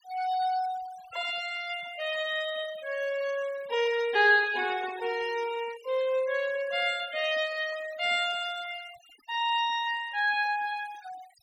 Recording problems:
noise reduction artefacts; signal-to-artefact ratio 18 dB

